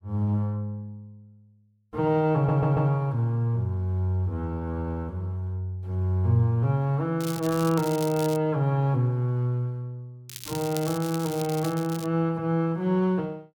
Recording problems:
stutter; at 2.5 s
crackle; from 7 to 8.5 s and from 10 to 12 s; loose cable, SNR 13 dB

